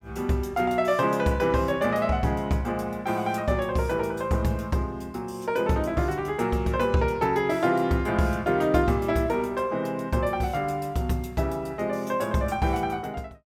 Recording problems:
none

